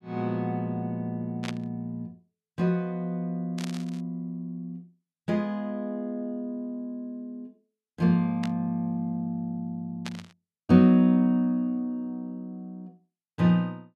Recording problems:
static burst; 4 times, first at 1.5 s; peak -5 dB vs average level

